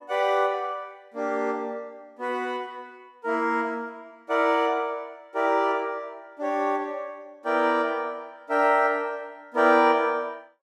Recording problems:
none

